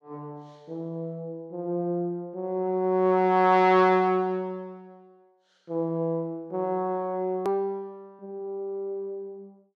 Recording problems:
edit click; at 7.5 s

